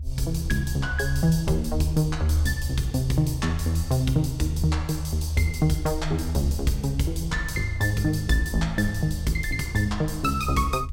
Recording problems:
low-frequency rumble; below 76 Hz, strongest tone 74 Hz, SNR 8 dB

